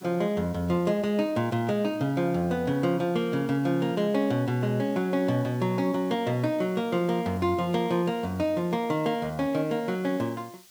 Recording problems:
hiss; slope +2 dB per octave, SNR 26 dB

